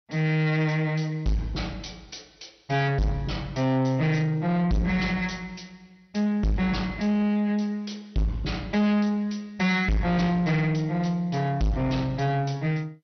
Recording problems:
lossy compression; MP2, log-spectral distance 3 dB, nothing above 6 kHz
distorted audio; soft clipping, signal-to-distortion ratio 7 dB

